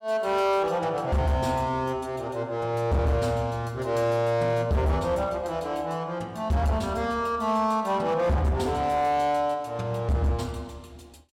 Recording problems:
distortion; hard clipping, signal-to-distortion ratio 12 dB

